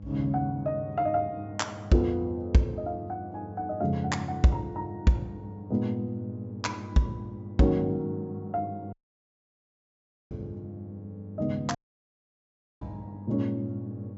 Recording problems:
treble cut off; nothing above 8 kHz
hum; 50 Hz, harmonics up to 600 Hz, SNR 13 dB
dropout; at 9 s for 1.5 s and at 12 s for 1 s

